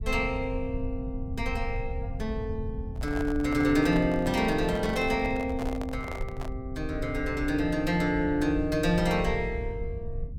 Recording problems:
rumble; below 90 Hz, SNR 9 dB
microphone handling noise; from 3 to 6.5 s; peak -5 dB vs average level

